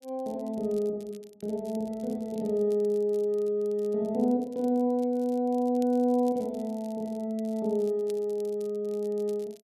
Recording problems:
crackle; vinyl, SNR 28 dB

